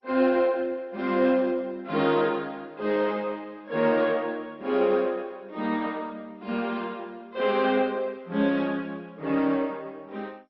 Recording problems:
lossy codec; MP2, log-spectral distance 2 dB, nothing above 4.5 kHz

